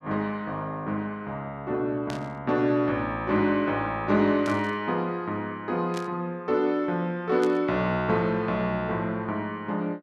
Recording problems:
burst of static; 4 times, first at 2 s; peak -8 dB vs average level

